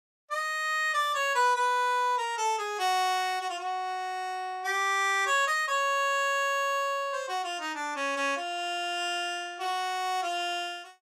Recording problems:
none

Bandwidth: 15.5 kHz